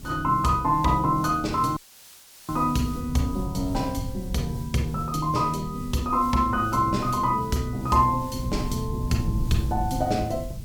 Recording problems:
background hiss; slope +1 dB per octave, SNR 22 dB
wind on the microphone; below 140 Hz, SNR 10 dB
audio cutting out; at 2 s for 0.5 s

